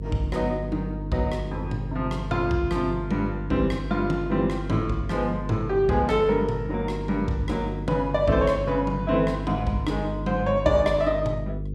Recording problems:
hum; 50 Hz, harmonics up to 500 Hz, SNR 8 dB

